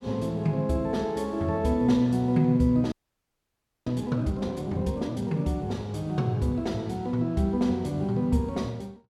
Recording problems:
frozen audio; at 3 s for 1 s

